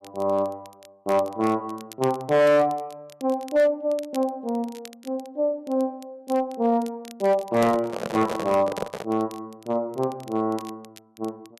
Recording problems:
distortion; hard clipping, signal-to-distortion ratio 12 dB
crackle; vinyl, SNR 24 dB
handling noise; from 7.5 to 9 s; peak 0 dB vs average level

